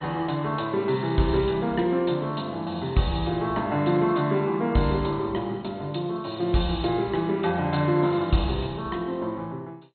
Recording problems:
lossy compression; MP2, log-spectral distance 4 dB, nothing above 4.2 kHz

